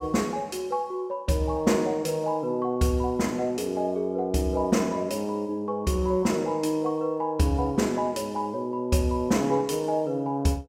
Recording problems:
none

